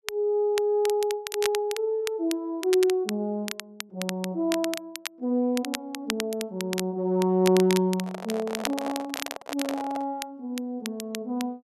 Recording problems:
crackle; vinyl, SNR 9 dB
microphone handling noise; from 8 to 10 s; peak -1 dB vs average level

